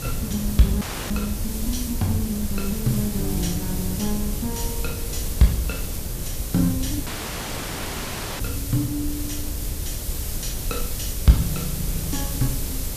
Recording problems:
electrical hum; 60 Hz, harmonics up to 600 Hz, SNR 16 dB
background hiss; slope +3 dB per octave, SNR 6 dB
rumble; below 74 Hz, SNR 11 dB
wind on the microphone; below 110 Hz, SNR 8 dB
audio cutting out; at 1 s and at 7 s for 1.5 s

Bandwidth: 14.5 kHz